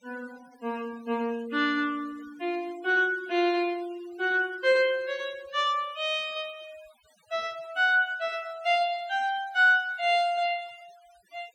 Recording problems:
noise reduction artefacts; signal-to-artefact ratio 25 dB

